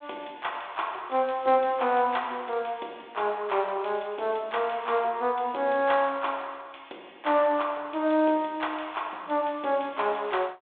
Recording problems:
telephone audio; 280 Hz to 3.6 kHz, G.726

